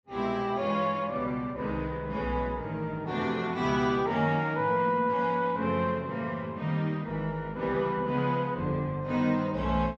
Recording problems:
none

